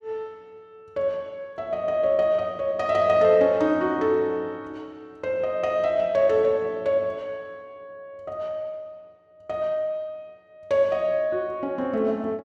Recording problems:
none

